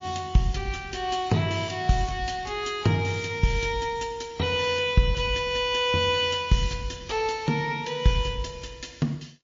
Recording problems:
codec artefacts; MP3, log-spectral distance 4 dB, nothing above 6.3 kHz

